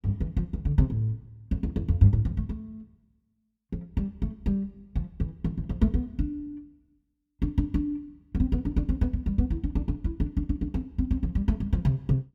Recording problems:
none

